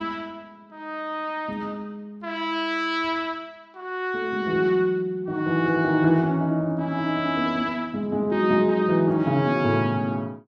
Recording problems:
none

